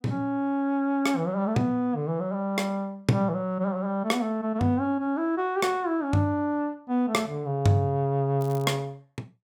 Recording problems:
crackling; at 8.5 s; loose cable, SNR 23 dB

